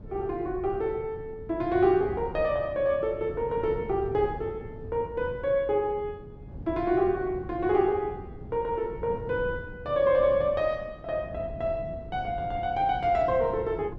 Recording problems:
wind noise; below 210 Hz, SNR 14 dB

